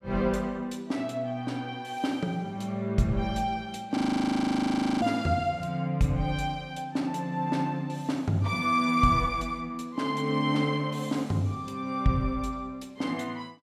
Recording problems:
audio freezing; at 4 s for 1 s

